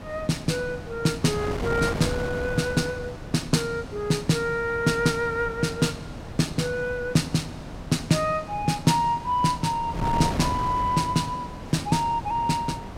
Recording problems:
wind on the microphone; below 630 Hz, SNR 10 dB

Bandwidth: 16.5 kHz